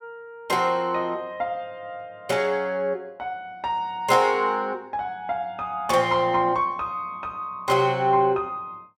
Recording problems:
none

